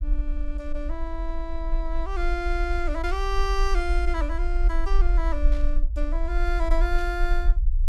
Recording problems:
low-frequency rumble; below 44 Hz, SNR -3 dB
burst of static; at 3 s, at 5.5 s and at 7 s; peak -12 dB vs average level

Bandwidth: 16.5 kHz